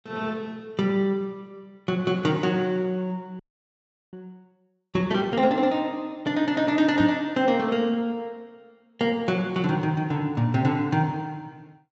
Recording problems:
treble cut off; nothing above 8 kHz
audio freezing; at 3.5 s for 0.5 s
knock on the microphone; at 7 s; peak -1 dB vs average level

